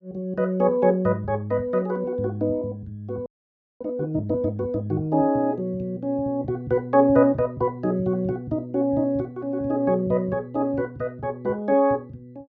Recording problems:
frozen audio; at 3.5 s for 0.5 s

